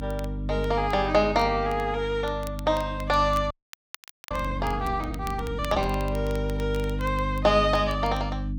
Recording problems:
mains hum; 50 Hz, harmonics up to 300 Hz, SNR 6 dB
crackling; vinyl, SNR 22 dB
frozen audio; at 3.5 s for 1 s

